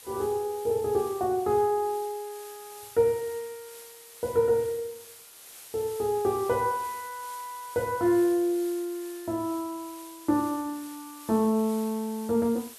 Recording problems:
hiss; slope 0 dB per octave, SNR 17 dB

